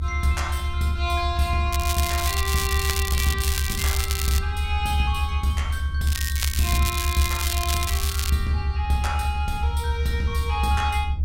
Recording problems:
rumble; below 76 Hz, strongest tone 74 Hz, SNR 0 dB
crackle; from 1.5 to 4.5 s and from 6 to 8.5 s; loose cable, SNR 1 dB

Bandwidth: 16 kHz